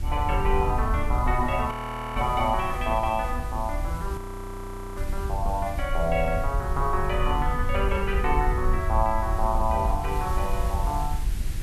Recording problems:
electrical hum; 50 Hz, harmonics up to 350 Hz, SNR 20 dB
background hiss; SNR 18 dB
wind noise; below 68 Hz, SNR 3 dB
frozen audio; at 1.5 s and at 4 s for 1 s

